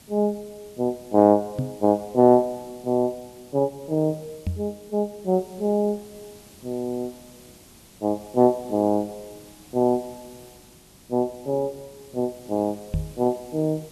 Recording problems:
background hiss; SNR 24 dB
knock on the microphone; at 1.5 s, at 4.5 s and at 13 s; peak +1 dB vs average level

